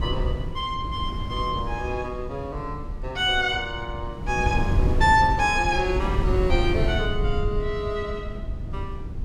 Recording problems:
low-frequency rumble; below 88 Hz, SNR 8 dB
wind on the microphone; below 120 Hz, SNR 5 dB

